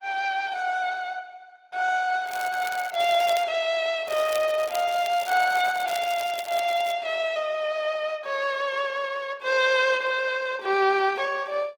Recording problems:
codec artefacts; Opus, log-spectral distance 3 dB
crackle; from 2.5 to 3.5 s and from 4 to 7 s; loose cable, SNR 17 dB

